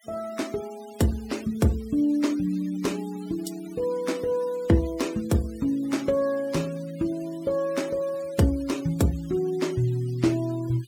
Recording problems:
denoising artefacts; signal-to-artefact ratio 20 dB

